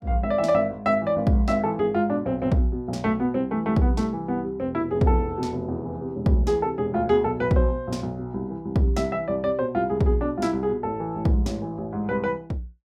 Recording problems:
none

